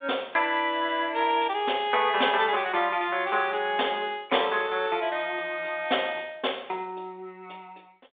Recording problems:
telephone audio; 300 Hz to 3.7 kHz, G.726

